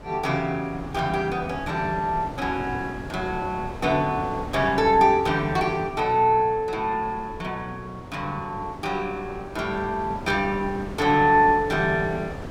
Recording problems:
wind noise; below 610 Hz, SNR 13 dB

